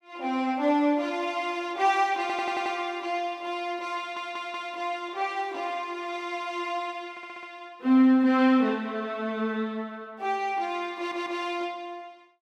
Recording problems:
audio stuttering; 4 times, first at 2 s

